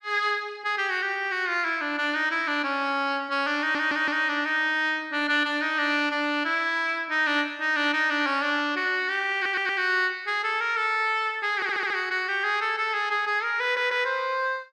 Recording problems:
stutter; 4 times, first at 3.5 s

